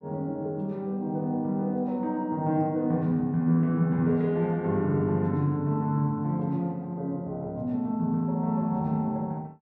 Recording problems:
none

